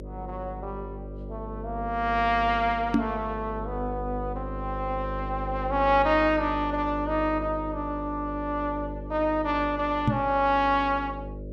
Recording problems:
hum; 50 Hz, harmonics up to 600 Hz, SNR 10 dB
knock on the microphone; at 3 s and at 10 s; peak +7 dB vs average level

